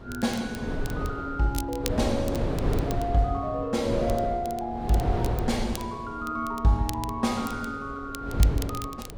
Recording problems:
wind noise; below 400 Hz, SNR 4 dB
crackling; vinyl, SNR 14 dB

